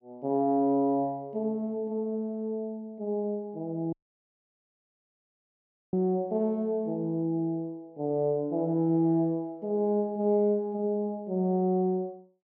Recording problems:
dropout; at 4 s for 2 s

